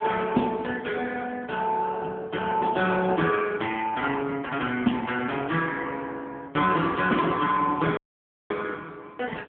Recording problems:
phone line; 130 Hz to 2.8 kHz, AMR-NB
audio cutting out; at 8 s for 0.5 s

